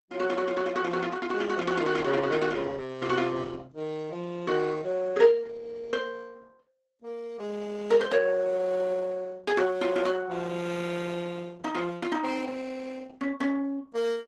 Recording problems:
lossy codec; Opus, log-spectral distance 3 dB, nothing above 12 kHz

